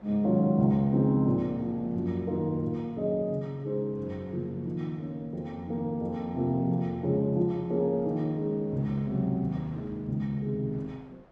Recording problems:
wind on the microphone; below 830 Hz, SNR 26 dB

